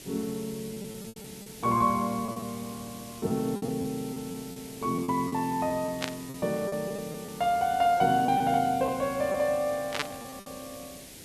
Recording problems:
hiss; SNR 15 dB
lost packets; 10% of the sound replaced, filled with repeated pitch periods
burst of static; at 6 s and at 10 s; peak +3 dB vs average level

